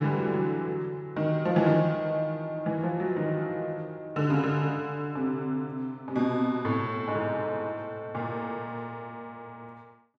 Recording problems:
none

